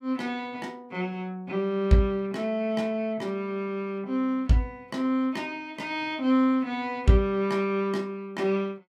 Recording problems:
none

